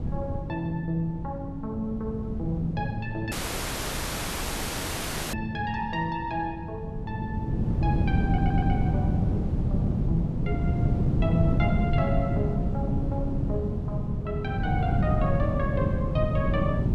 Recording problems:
wind noise; below 190 Hz, SNR -4 dB
audio cutting out; at 3.5 s for 2 s
stutter; at 8.5 s

